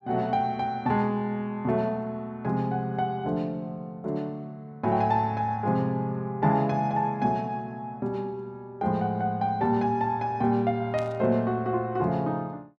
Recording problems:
burst of static; at 11 s; peak -12 dB vs average level

